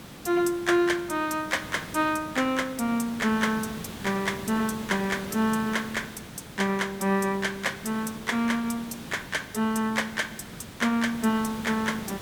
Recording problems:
hiss; slope -4 dB per octave, SNR 13 dB

